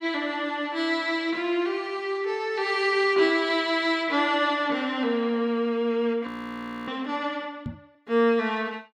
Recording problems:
audio freezing; at 6.5 s for 0.5 s
microphone bump; at 7.5 s; peak -4 dB vs average level

